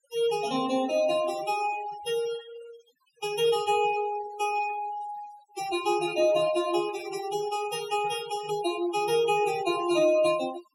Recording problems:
noise reduction artefacts; signal-to-artefact ratio 15 dB

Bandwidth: 16 kHz